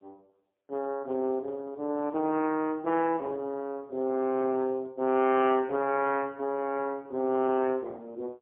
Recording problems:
telephone audio; 220 Hz to 3.4 kHz, AMR-NB, then MP3

